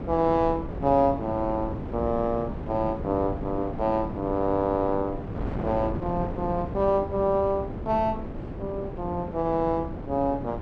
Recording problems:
wind on the microphone; below 390 Hz, SNR 8 dB

